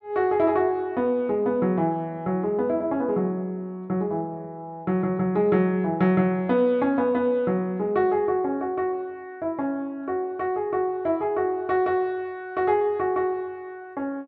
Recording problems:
none

